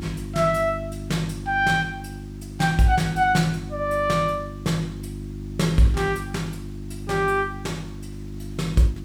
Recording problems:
mains hum; 50 Hz, harmonics up to 350 Hz, SNR 11 dB
hiss; slope -3 dB per octave, SNR 30 dB

